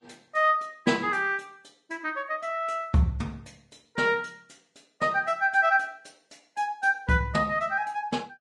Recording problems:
lossy compression; Vorbis, log-spectral distance 3 dB, nothing above 10.4 kHz

